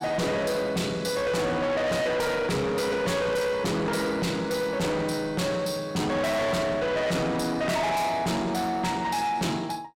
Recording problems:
distortion; soft clipping, signal-to-distortion ratio 6 dB

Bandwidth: 16 kHz